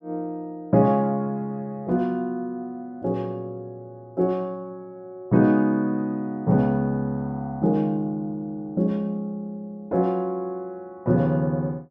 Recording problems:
none

